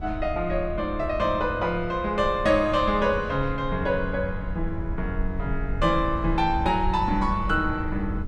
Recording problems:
rumble; below 80 Hz, SNR 9 dB

